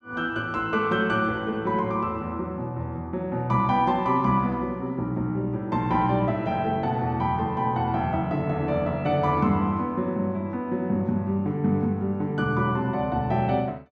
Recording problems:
none

